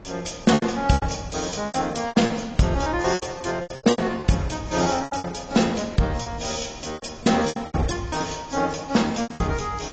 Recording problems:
lossy compression; AAC, log-spectral distance 7 dB, nothing above 7.6 kHz
wind on the microphone; below 510 Hz, SNR 20 dB
lost packets; 15% of the sound replaced, filled with repeated pitch periods

